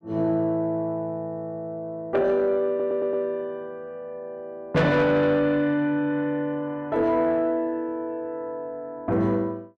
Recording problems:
distortion; soft clipping, signal-to-distortion ratio 12 dB
stutter; at 2.5 s

